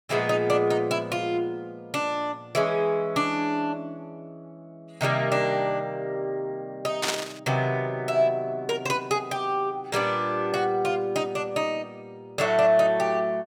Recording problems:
static burst; at 7 s; peak +4 dB vs average level

